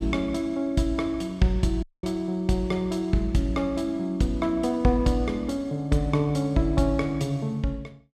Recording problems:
audio cutting out; at 2 s

